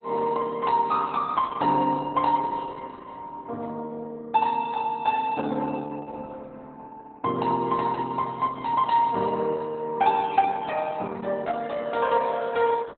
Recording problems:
lossy codec; Opus, log-spectral distance 3 dB, nothing above 4 kHz

